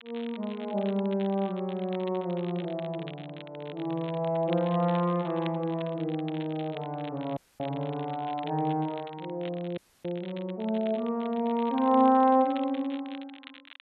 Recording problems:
treble missing; nothing above 4 kHz
crackling; vinyl, SNR 19 dB
dropout; at 7.5 s and at 10 s

